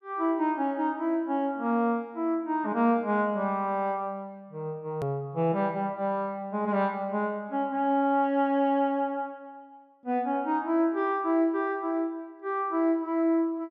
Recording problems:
click at an edit; at 5 s

